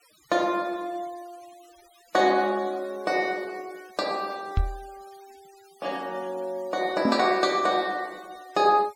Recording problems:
denoising artefacts; signal-to-artefact ratio 25 dB
microphone bump; at 4.5 s and at 7 s; peak +5 dB vs average level

